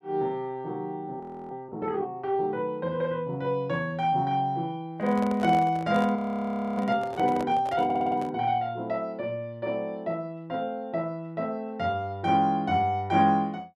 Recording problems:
audio freezing; at 1 s and at 6 s for 0.5 s
handling noise; from 5 to 8.5 s; peak -4 dB vs average level
stutter; at 8 s

